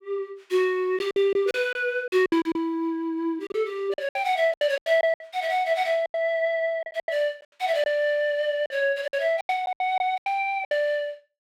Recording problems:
lost packets; 12% of the sound replaced, filled with silence

